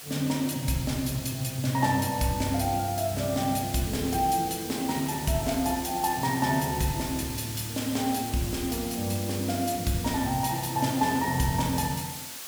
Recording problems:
background hiss; slope +1 dB per octave, SNR 9 dB

